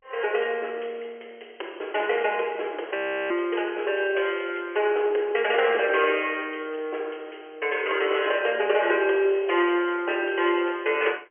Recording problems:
telephone audio; 320 Hz to 3.2 kHz, G.711
audio freezing; at 3 s

